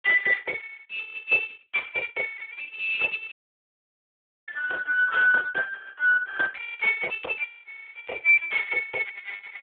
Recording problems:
phone line; 370 Hz to 2.2 kHz, Speex
dropout; at 3.5 s for 1 s

